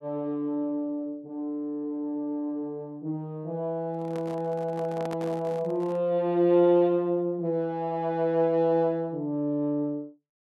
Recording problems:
handling noise; from 4 to 6 s; peak -7 dB vs average level

